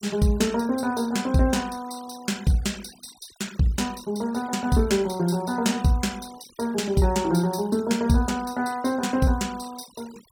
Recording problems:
noise reduction artefacts; signal-to-artefact ratio 21 dB

